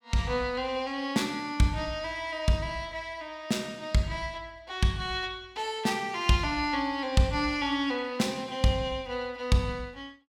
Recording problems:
none

